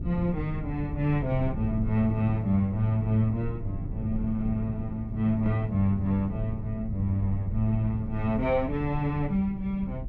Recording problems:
low-frequency rumble; below 96 Hz, SNR 11 dB
wind on the microphone; below 210 Hz, SNR 11 dB

